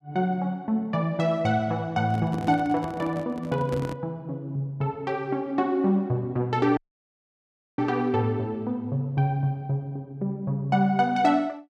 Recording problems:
handling noise; from 2 to 4 s; peak -3 dB vs average level
audio cutting out; at 7 s for 1 s

